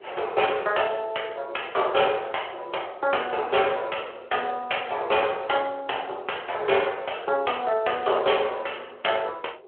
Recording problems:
telephone audio; 320 Hz to 3.3 kHz, Speex
wind noise; below 580 Hz, SNR 22 dB

